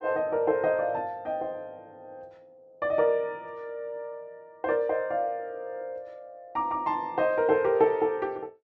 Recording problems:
low-pass filter; nothing above 8 kHz

